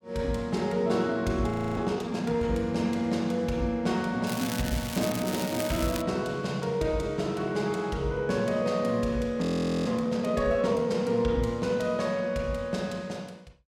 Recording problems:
frozen audio; at 1.5 s and at 9.5 s
crackling; from 4.5 to 6 s; loose cable, SNR 9 dB

